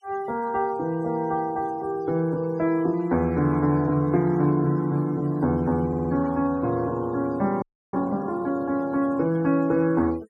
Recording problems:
denoising artefacts; signal-to-artefact ratio 26 dB
audio stuttering; at 6 s
audio freezing; at 7.5 s

